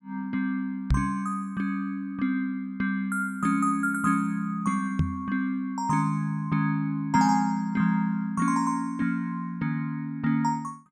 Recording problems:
microphone bump; at 1 s and at 5 s; peak +7 dB vs average level

